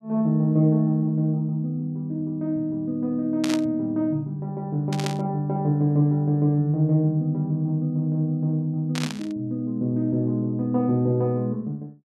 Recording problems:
static burst; at 3.5 s, at 5 s and at 9 s; peak -3 dB vs average level

